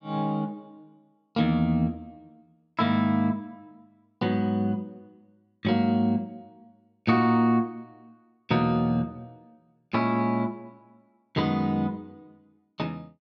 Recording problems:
none

